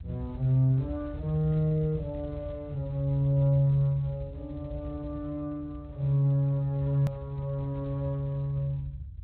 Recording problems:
lossy compression; Speex, then MP3, log-spectral distance 2 dB, nothing above 15.6 kHz
rumble; below 96 Hz, SNR 13 dB
click at an edit; at 7 s

